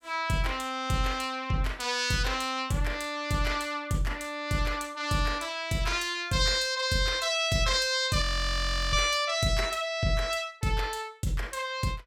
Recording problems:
audio freezing; at 8 s for 0.5 s

